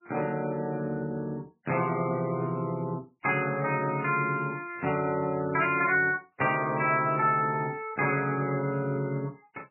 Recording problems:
lossy compression; MP3, log-spectral distance 3 dB, nothing above 2.5 kHz

